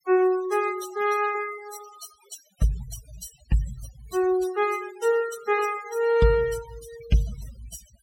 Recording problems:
noise reduction artefacts; signal-to-artefact ratio 13 dB

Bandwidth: 17 kHz